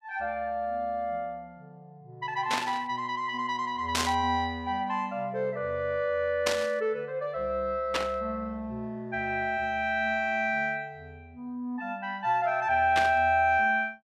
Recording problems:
burst of static; 5 times, first at 2.5 s; peak +4 dB vs average level

